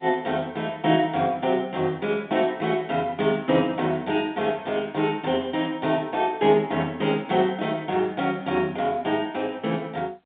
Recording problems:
telephone audio; 280 Hz to 3.6 kHz, G.711

